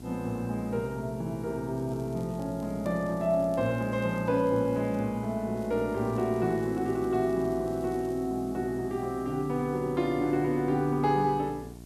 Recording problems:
hum; 60 Hz, harmonics up to 1 kHz, SNR 16 dB
hiss; SNR 27 dB
crackle; from 2 to 5 s and from 5.5 to 8.5 s; loose cable, SNR 30 dB

